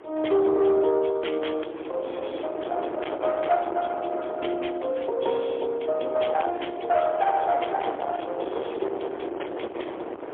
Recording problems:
telephone audio; 280 Hz to 3.5 kHz, AMR-NB, then MP3
distorted audio; soft clipping, signal-to-distortion ratio 8 dB
wind noise; below 790 Hz, SNR 8 dB

